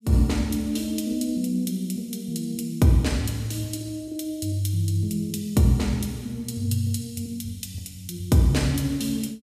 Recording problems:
none

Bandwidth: 15 kHz